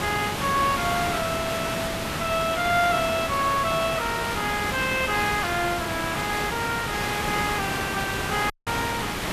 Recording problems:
background hiss; slope -3 dB per octave, SNR 2 dB
static burst; at 2 s, at 5.5 s and at 7 s; peak -8 dB vs average level
audio cutting out; at 8.5 s

